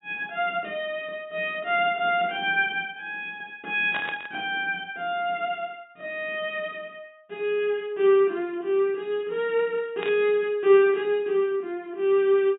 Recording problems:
treble missing; nothing above 4 kHz
static burst; at 4 s and at 10 s; peak -3 dB vs average level

